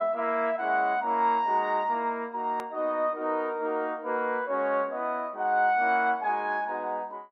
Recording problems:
edit click; at 2.5 s

